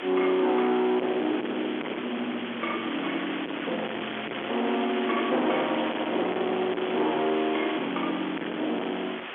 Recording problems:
phone line; 280 Hz to 3.4 kHz, G.711
distorted audio; soft clipping, signal-to-distortion ratio 8 dB
hiss; SNR 7 dB
wind noise; below 870 Hz, SNR 18 dB

